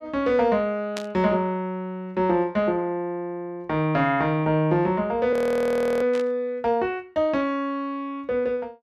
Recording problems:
static burst; at 1 s and at 6 s; peak -5 dB vs average level
audio freezing; at 5.5 s for 0.5 s

